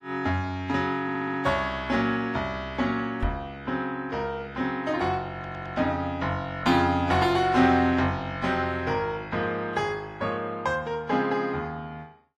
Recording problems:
lossy codec; AAC, log-spectral distance 2 dB, nothing above 14.6 kHz
stutter; at 1 s and at 5.5 s
microphone bump; at 3 s; peak +1 dB vs average level

